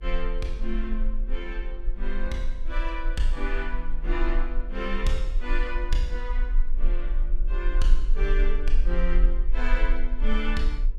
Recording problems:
hum; 50 Hz, harmonics up to 550 Hz, SNR 24 dB
low-frequency rumble; below 34 Hz, strongest tone 20 Hz, SNR -4 dB

